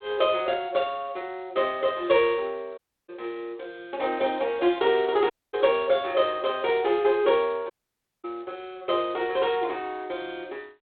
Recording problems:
telephone audio; 300 Hz to 3.9 kHz, G.726
audio cutting out; at 3 s, at 5.5 s and at 7.5 s for 0.5 s

